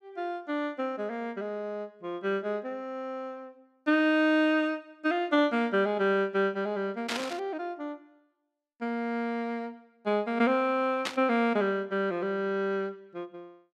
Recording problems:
static burst; at 7 s and at 11 s; peak +2 dB vs average level

